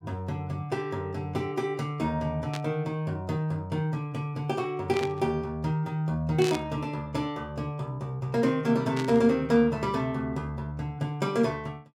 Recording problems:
burst of static; 4 times, first at 2.5 s; peak -3 dB vs average level

